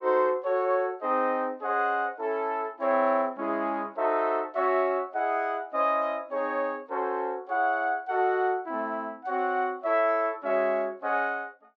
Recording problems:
none

